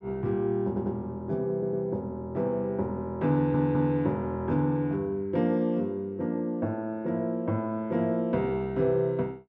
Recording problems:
stutter; at 0.5 s, at 1.5 s and at 3.5 s

